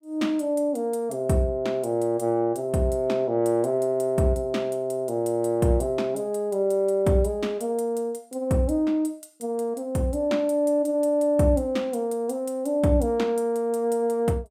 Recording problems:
none

